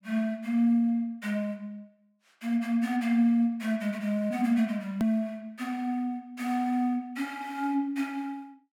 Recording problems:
edit click; at 5 s

